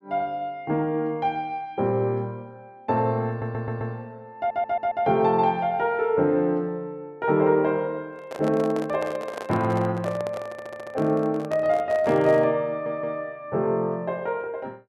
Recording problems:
stutter; 4 times, first at 3.5 s
microphone handling noise; from 8 to 13 s; peak -4 dB vs average level

